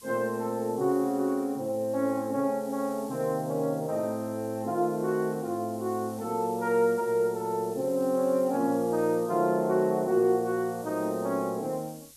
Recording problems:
hiss; SNR 21 dB

